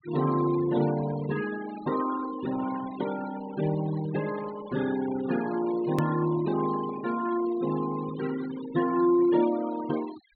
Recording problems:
low-pass filter; nothing above 4.4 kHz
noise reduction artefacts; signal-to-artefact ratio 14 dB
edit click; at 6 s

